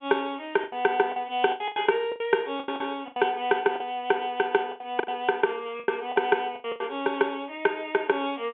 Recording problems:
phone line; 220 Hz to 3.5 kHz, G.711
packet loss; 12% of the sound replaced, filled with the last packet

